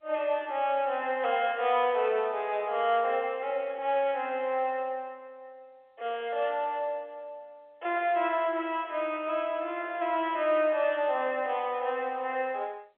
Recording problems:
telephone audio; 370 Hz to 3.4 kHz, G.711

